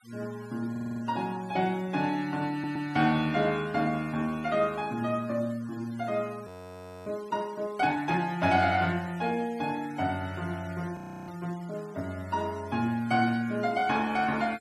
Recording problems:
denoising artefacts; signal-to-artefact ratio 22 dB
audio stuttering; at 0.5 s and at 2.5 s
frozen audio; at 6.5 s for 0.5 s and at 11 s

